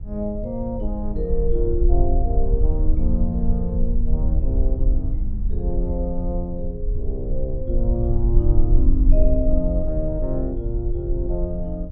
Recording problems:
rumble; below 54 Hz, SNR -3 dB

